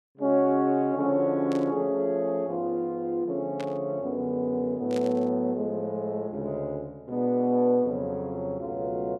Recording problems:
static burst; at 1.5 s, at 3.5 s and at 5 s; peak -10 dB vs average level

